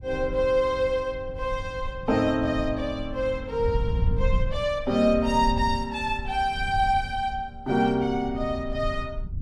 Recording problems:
low-frequency rumble; below 88 Hz, SNR 8 dB

